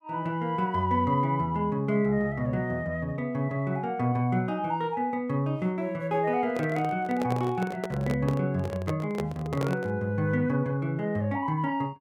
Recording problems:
handling noise; from 6.5 to 10 s; peak 0 dB vs average level

